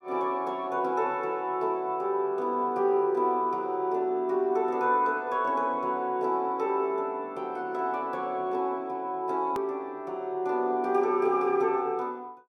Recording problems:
hard cut with a click; at 9.5 s

